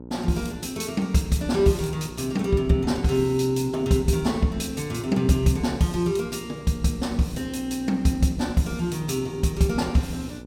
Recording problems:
mains hum; 60 Hz, harmonics up to 960 Hz, SNR 17 dB

